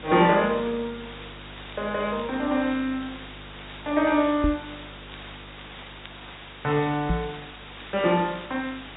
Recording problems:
low-pass filter; nothing above 4 kHz
hum; 50 Hz, harmonics up to 550 Hz, SNR 22 dB
hiss; SNR 16 dB
crackling; vinyl, SNR 29 dB
microphone thump; at 4.5 s and at 7 s; peak +4 dB vs average level

